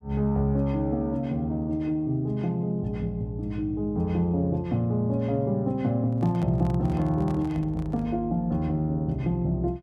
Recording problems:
microphone handling noise; from 6 to 8 s; peak -11 dB vs average level

